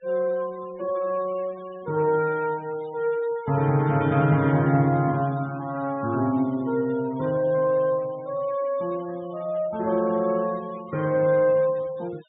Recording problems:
treble cut off; nothing above 4 kHz
denoising artefacts; signal-to-artefact ratio 23 dB

